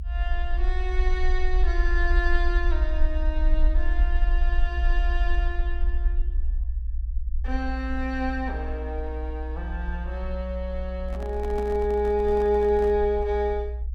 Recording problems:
rumble; below 60 Hz, SNR 0 dB
handling noise; from 11 to 13 s; peak -6 dB vs average level

